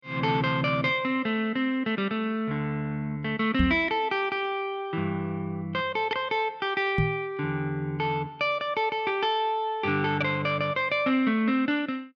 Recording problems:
microphone bump; at 3.5 s and at 7 s; peak +5 dB vs average level

